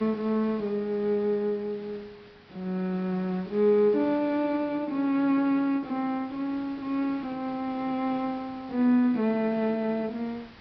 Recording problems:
low-pass filter; nothing above 5.5 kHz
background hiss; SNR 24 dB

